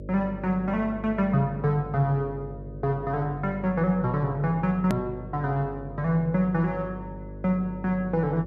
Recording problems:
hum; 50 Hz, harmonics up to 600 Hz, SNR 13 dB
edit click; at 5 s

